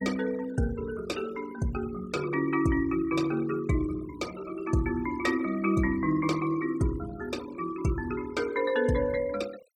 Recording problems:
noise reduction artefacts; signal-to-artefact ratio 18 dB

